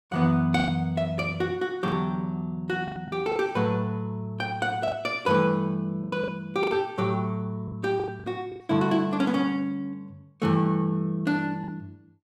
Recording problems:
lost packets; 7% of the sound replaced, filled with the last packet

